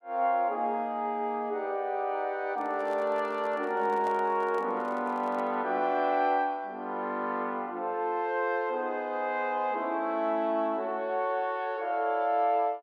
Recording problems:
microphone handling noise; from 2.5 to 5.5 s; peak -8 dB vs average level

